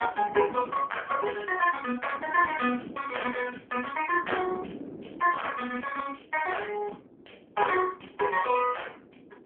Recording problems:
telephone audio; 190 Hz to 3.3 kHz, AMR-NB
wind on the microphone; below 420 Hz, SNR 17 dB

